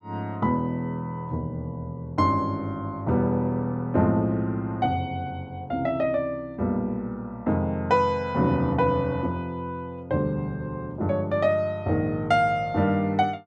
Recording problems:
none

